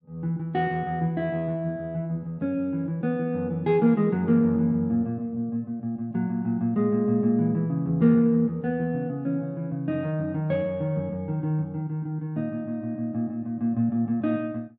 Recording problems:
none

